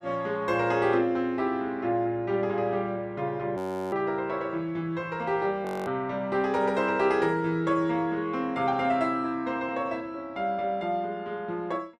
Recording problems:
frozen audio; at 3.5 s and at 5.5 s

